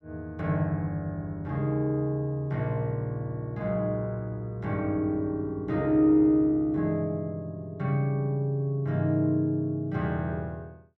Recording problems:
none

